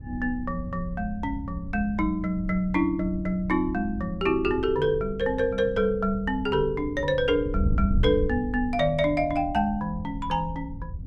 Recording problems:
wind noise; below 92 Hz, SNR 9 dB

